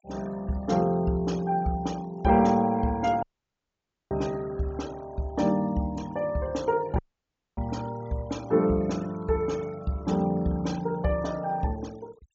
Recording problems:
low-pass filter; nothing above 7.5 kHz
denoising artefacts; signal-to-artefact ratio 23 dB
dropout; at 3 s for 1 s and at 7 s for 0.5 s

